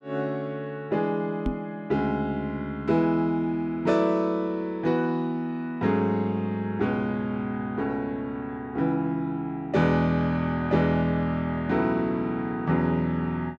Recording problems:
microphone bump; at 1.5 s; peak +2 dB vs average level

